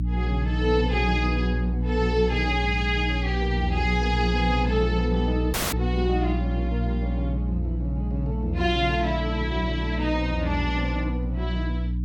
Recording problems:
hum; 60 Hz, harmonics up to 300 Hz, SNR 0 dB
dropout; at 5.5 s

